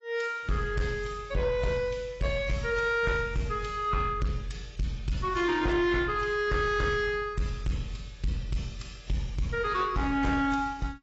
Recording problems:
codec artefacts; AAC, log-spectral distance 2 dB, nothing above 7.6 kHz
distortion; soft clipping, signal-to-distortion ratio 11 dB

